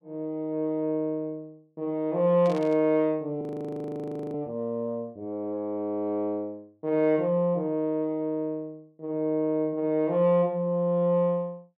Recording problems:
static burst; at 2.5 s; peak -13 dB vs average level
frozen audio; at 3.5 s for 1 s

